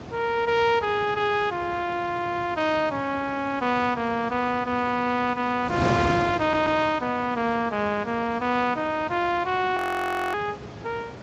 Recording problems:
lossy compression; Speex, log-spectral distance 3 dB, nothing above 15.1 kHz
wind noise; below 880 Hz, SNR 10 dB
audio stuttering; at 6.5 s
audio freezing; at 10 s for 0.5 s

